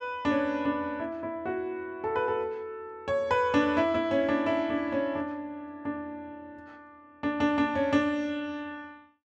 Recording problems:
none

